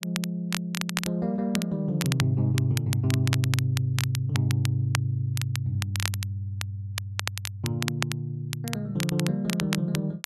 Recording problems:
crackle; vinyl, SNR 7 dB

